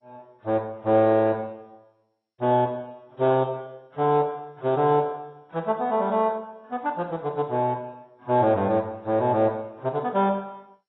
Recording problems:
lossy codec; AAC, then MP2, log-spectral distance 2 dB, nothing above 3.4 kHz

